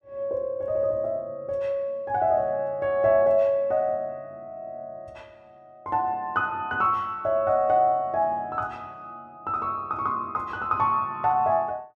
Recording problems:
none

